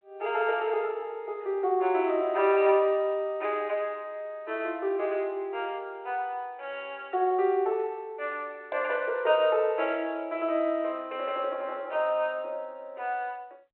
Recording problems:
phone line; 340 Hz to 3.1 kHz, G.726

